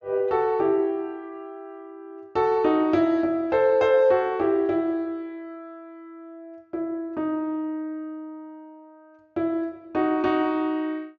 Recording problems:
low-pass filter; nothing above 8 kHz

